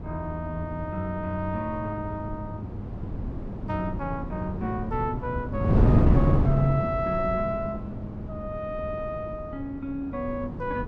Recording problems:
wind on the microphone; below 240 Hz, SNR 0 dB

